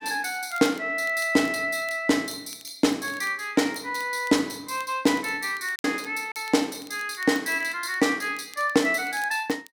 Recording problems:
crackle; vinyl, SNR 24 dB
packet loss; 1.3% of the sound replaced, filled with silence

